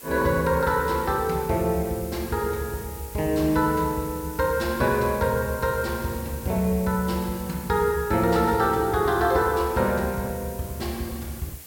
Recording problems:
background hiss; slope -2 dB per octave, SNR 15 dB

